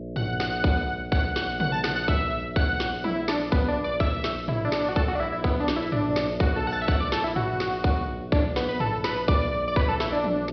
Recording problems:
treble missing; nothing above 5.5 kHz
hum; 60 Hz, harmonics up to 660 Hz, SNR 10 dB

